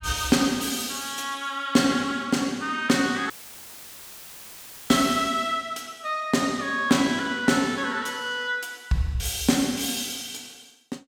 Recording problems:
audio cutting out; at 3.5 s for 1.5 s; filled with static

